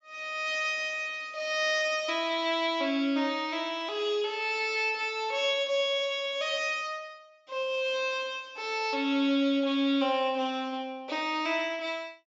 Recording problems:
treble cut off; nothing above 8 kHz

